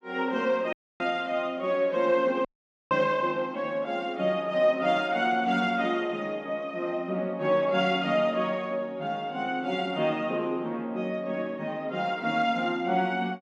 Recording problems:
dropout; at 0.5 s and at 2.5 s

